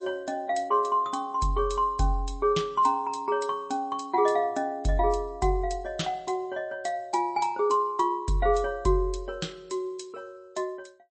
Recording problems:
lossy compression; MP3, log-spectral distance 2 dB, nothing above 8.2 kHz

